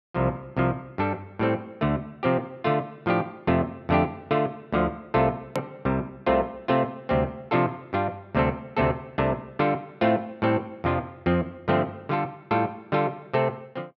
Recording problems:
edit click; at 5.5 s

